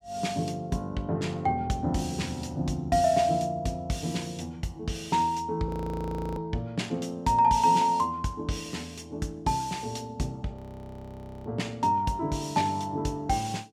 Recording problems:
frozen audio; at 5.5 s for 0.5 s and at 11 s for 1 s

